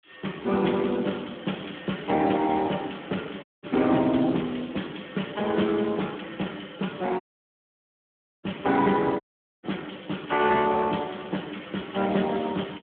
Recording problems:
phone line; 150 Hz to 3.5 kHz, Speex
audio cutting out; at 3.5 s, at 7 s for 1 s and at 9 s

